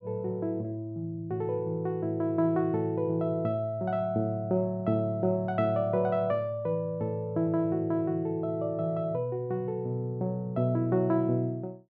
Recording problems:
none

